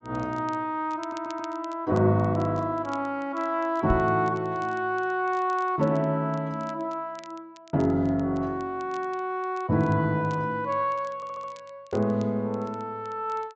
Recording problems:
treble missing; nothing above 8 kHz
crackling; vinyl, SNR 27 dB
audio stuttering; at 1 s and at 11 s
microphone thump; at 4 s; peak +3 dB vs average level

